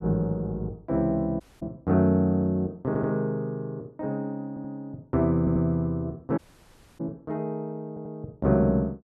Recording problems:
audio cutting out; at 1.5 s and at 6.5 s for 0.5 s
audio stuttering; 4 times, first at 3 s

